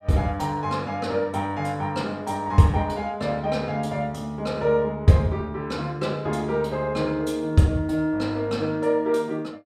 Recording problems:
none

